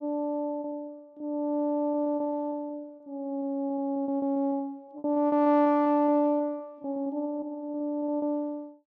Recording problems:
packet loss; 12% of the sound replaced, filled with repeated pitch periods

